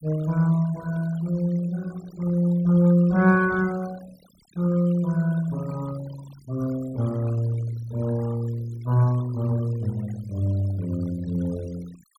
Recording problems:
denoising artefacts; signal-to-artefact ratio 21 dB

